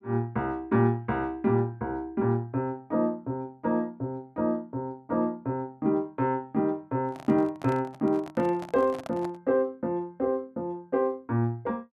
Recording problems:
handling noise; from 7 to 9.5 s; peak -7 dB vs average level

